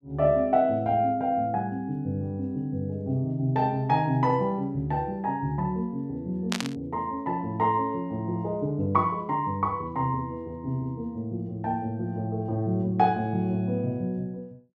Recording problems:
burst of static; at 6.5 s; peak +2 dB vs average level

